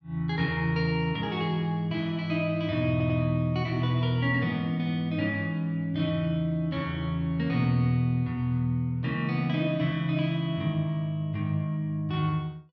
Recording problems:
audio stuttering; at 3 s

